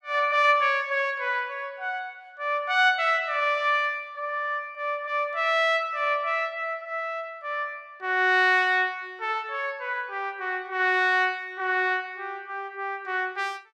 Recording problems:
none

